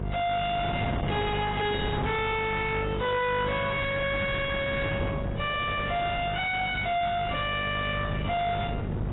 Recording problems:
lossy codec; AAC, log-spectral distance 6 dB, nothing above 3.5 kHz
distorted audio; soft clipping, signal-to-distortion ratio 6 dB
electrical hum; 50 Hz, harmonics up to 2.2 kHz, SNR 5 dB
wind on the microphone; below 760 Hz, SNR 6 dB

